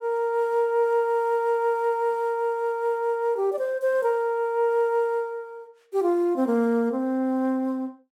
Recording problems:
none

